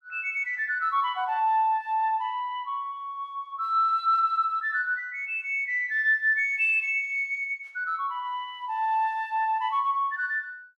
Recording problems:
none

